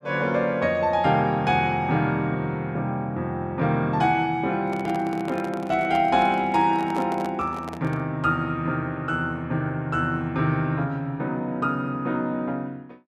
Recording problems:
microphone handling noise; from 4.5 to 8 s; peak -7 dB vs average level

